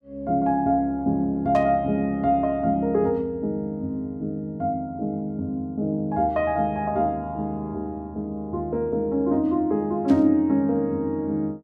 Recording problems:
static burst; at 1.5 s and at 10 s; peak -13 dB vs average level

